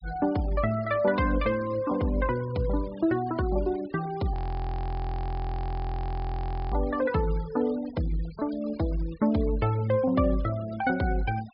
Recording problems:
low-pass filter; nothing above 5.5 kHz
noise reduction artefacts; signal-to-artefact ratio 21 dB
audio freezing; at 4.5 s for 2.5 s

